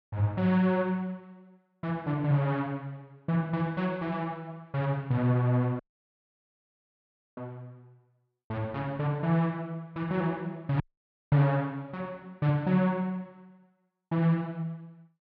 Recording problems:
audio cutting out; at 6 s for 1.5 s and at 11 s for 0.5 s

